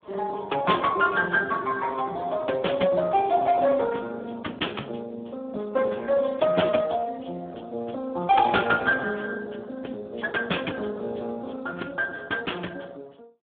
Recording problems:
telephone audio; 260 Hz to 3.4 kHz, Speex

